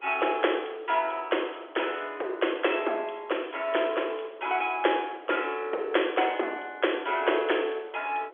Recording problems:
phone line; 320 Hz to 3.4 kHz, G.711
wind on the microphone; below 830 Hz, SNR 23 dB

